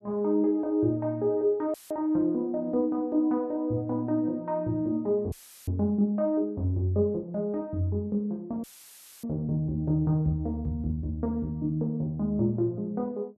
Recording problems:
audio cutting out; at 1.5 s, at 5.5 s and at 8.5 s for 0.5 s; filled with static

